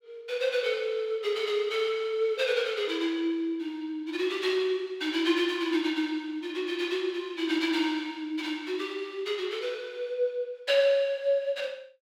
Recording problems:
none

